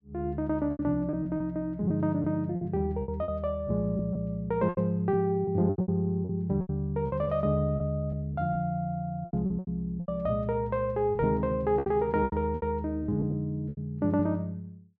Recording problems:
lost packets; 11% of the sound replaced, filled with repeated pitch periods

